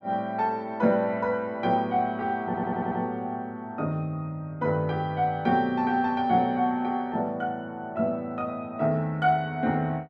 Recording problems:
audio stuttering; at 2.5 s

